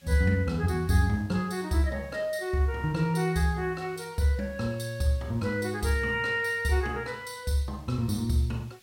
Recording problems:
hiss; SNR 30 dB

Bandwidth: 16.5 kHz